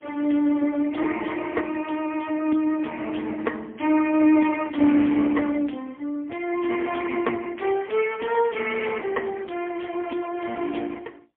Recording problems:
telephone audio; 240 Hz to 3.2 kHz, AMR-NB, then MP3

